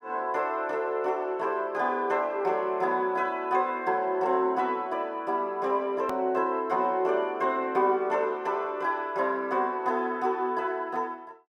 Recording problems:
click at an edit; at 6 s

